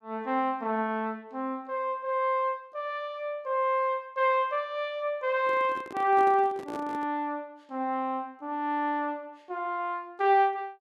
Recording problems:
microphone handling noise; from 5.5 to 7 s; peak -7 dB vs average level

